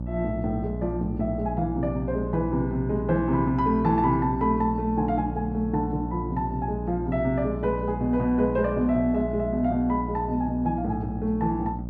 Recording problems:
mains hum; 60 Hz, harmonics up to 660 Hz, SNR 7 dB

